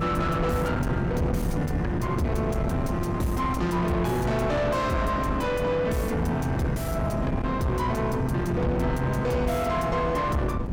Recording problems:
distorted audio; soft clipping, signal-to-distortion ratio 7 dB
electrical hum; 50 Hz, harmonics up to 300 Hz, SNR 17 dB
wind on the microphone; below 310 Hz, SNR 4 dB

